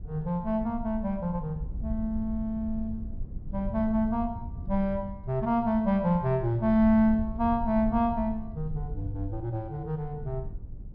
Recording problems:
treble cut off; nothing above 5.5 kHz
rumble; below 86 Hz, SNR 11 dB

